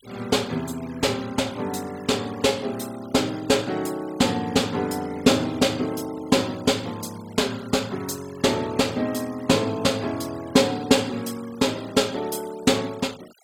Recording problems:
noise reduction artefacts; signal-to-artefact ratio 21 dB

